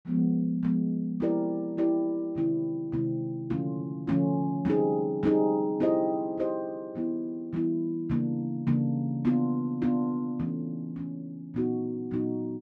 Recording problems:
none

